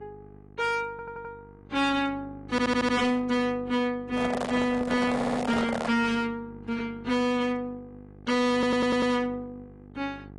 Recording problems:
lossy codec; AAC, then AAC, log-spectral distance 2 dB, nothing above 10.4 kHz
distorted audio; hard clipping, signal-to-distortion ratio 10 dB
hum; 50 Hz, harmonics up to 1.3 kHz, SNR 21 dB
stutter; 4 times, first at 1 s
microphone handling noise; from 4 to 6 s; peak 0 dB vs average level

